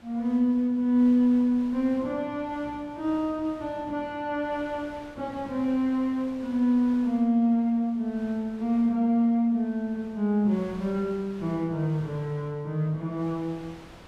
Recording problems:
wind noise; below 2 kHz, SNR 24 dB

